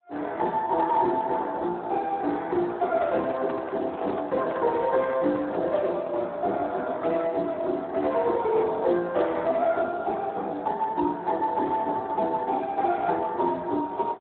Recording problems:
telephone audio; 220 Hz to 3.6 kHz, Speex
handling noise; from 3 to 6 s; peak -5 dB vs average level

